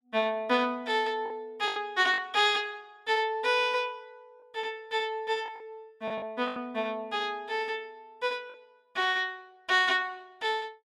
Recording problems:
lost packets; 4% of the sound replaced, filled with the last packet

